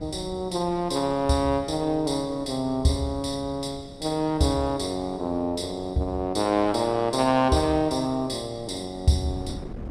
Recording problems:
wind on the microphone; below 290 Hz, SNR 19 dB

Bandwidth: 13 kHz